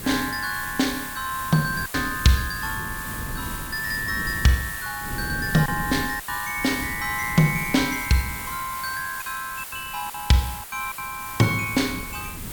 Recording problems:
hiss; SNR 9 dB
wind on the microphone; below 230 Hz, SNR 13 dB
lost packets; 4% of the sound replaced, filled with silence

